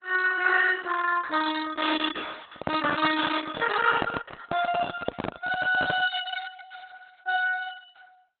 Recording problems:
lossy codec; Opus, log-spectral distance 6 dB, nothing above 3.8 kHz
handling noise; from 2.5 to 6 s; peak +5 dB vs average level

